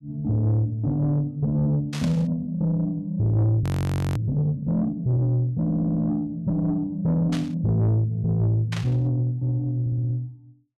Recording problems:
distorted audio; soft clipping, signal-to-distortion ratio 10 dB
static burst; at 2 s, at 7.5 s and at 8.5 s; peak -6 dB vs average level
frozen audio; at 3.5 s for 0.5 s
stutter; at 5.5 s and at 10 s

